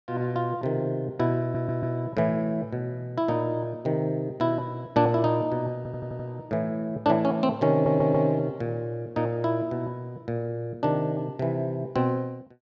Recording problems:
stutter; at 1.5 s, at 6 s and at 7.5 s

